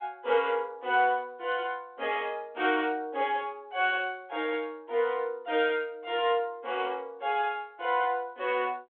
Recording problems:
telephone audio; 260 Hz to 3.5 kHz, G.726

